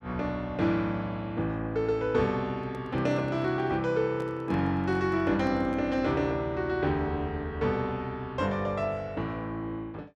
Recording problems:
microphone handling noise; from 2.5 to 6 s; peak -10 dB vs average level

